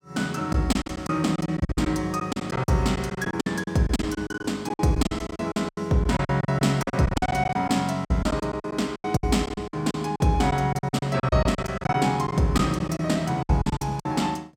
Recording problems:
packet loss; 17% of the sound replaced, filled with silence

